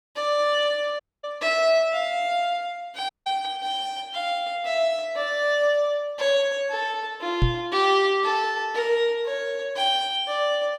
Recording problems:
dropout; at 1 s and at 3 s
knock on the microphone; at 7.5 s; peak +6 dB vs average level

